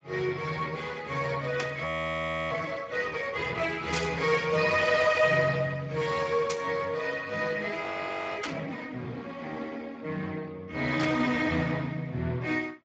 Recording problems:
codec artefacts; Speex, log-spectral distance 4 dB, nothing above 7.3 kHz
static burst; 5 times, first at 1.5 s; peak +1 dB vs average level
frozen audio; at 2 s for 0.5 s and at 8 s for 0.5 s

